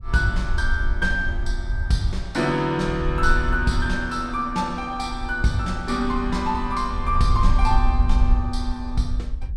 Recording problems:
wind on the microphone; below 60 Hz, SNR 3 dB

